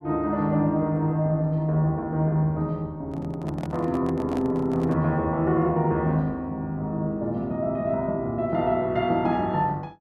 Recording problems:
microphone handling noise; from 3 to 5 s; peak -8 dB vs average level

